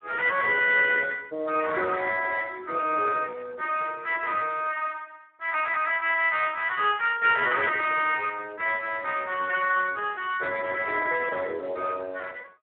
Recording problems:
phone line; 370 Hz to 3.2 kHz, Speex

